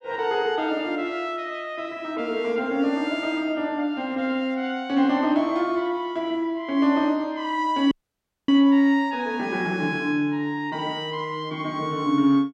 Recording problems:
audio cutting out; at 8 s for 0.5 s

